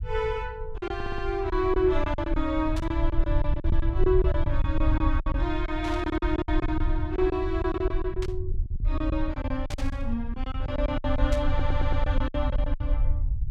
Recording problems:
low-frequency rumble; below 68 Hz, SNR 1 dB
packet loss; 14% of the sound replaced, filled with silence
audio stuttering; at 1 s and at 11 s
burst of static; 5 times, first at 3 s; peak -5 dB vs average level

